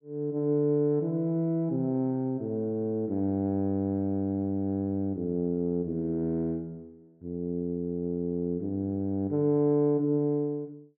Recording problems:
none

